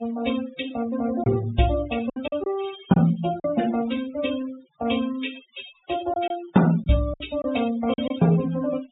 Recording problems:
low-pass filter; nothing above 4 kHz
denoising artefacts; signal-to-artefact ratio 15 dB
lost packets; 5% of the sound replaced, filled with silence

